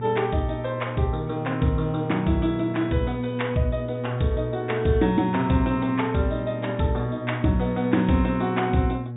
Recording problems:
low-pass filter; nothing above 4 kHz
electrical hum; 60 Hz, harmonics up to 600 Hz, SNR 9 dB

